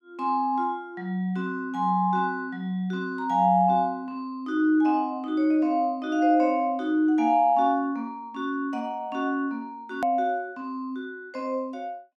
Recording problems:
edit click; at 10 s

